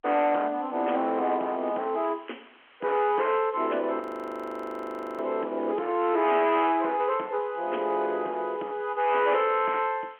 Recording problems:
phone line; 260 Hz to 3.3 kHz, G.711
distorted audio; soft clipping, signal-to-distortion ratio 12 dB
hiss; SNR 28 dB
frozen audio; at 4 s for 1 s

